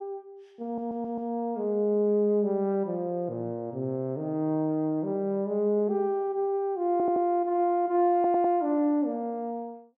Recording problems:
audio stuttering; at 0.5 s, at 7 s and at 8 s

